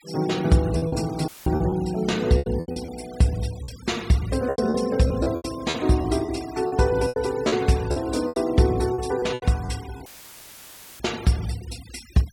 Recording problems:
denoising artefacts; signal-to-artefact ratio 19 dB
lost packets; 10% of the sound replaced, filled with repeated pitch periods
audio cutting out; at 1.5 s and at 10 s for 1 s; filled with static

